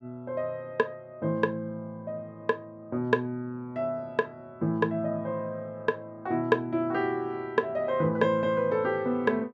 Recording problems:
none

